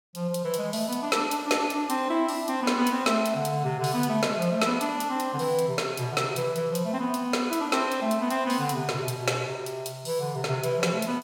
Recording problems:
none

